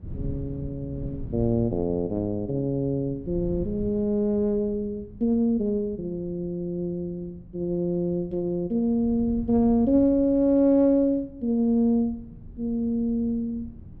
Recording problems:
wind noise; below 160 Hz, SNR 17 dB

